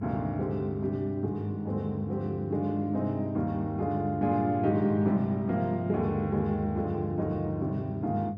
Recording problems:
hum; 50 Hz, harmonics up to 500 Hz, SNR 9 dB

